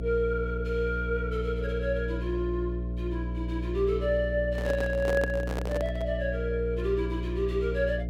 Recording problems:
hum; 60 Hz, harmonics up to 660 Hz, SNR 3 dB
microphone handling noise; from 4.5 to 6 s; peak +1 dB vs average level

